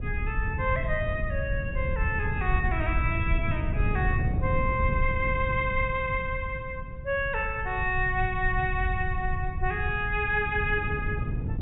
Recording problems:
low-pass filter; nothing above 4 kHz
rumble; below 88 Hz, SNR 5 dB
wind on the microphone; below 140 Hz, SNR 5 dB

